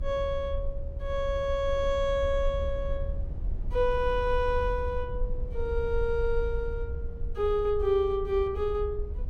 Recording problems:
low-frequency rumble; below 68 Hz, SNR 7 dB

